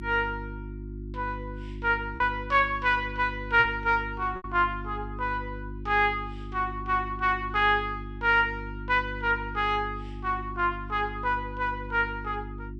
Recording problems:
hum; 50 Hz, harmonics up to 350 Hz, SNR 12 dB
packet loss; 1.4% of the sound replaced, filled with repeated pitch periods

